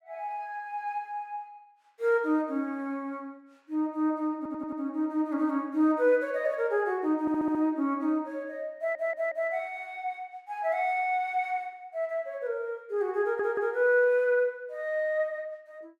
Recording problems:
audio stuttering; 4 times, first at 4.5 s

